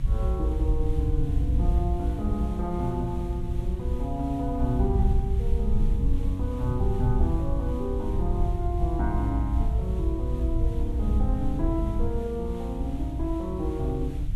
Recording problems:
background hiss; SNR 21 dB
rumble; below 72 Hz, SNR -3 dB

